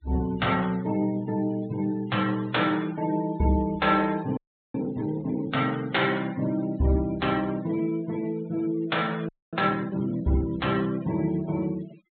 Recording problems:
treble missing; nothing above 4 kHz
noise reduction artefacts; signal-to-artefact ratio 19 dB
audio freezing; at 4.5 s and at 9.5 s

